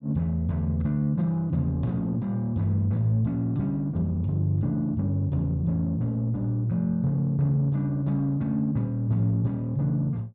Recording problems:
none

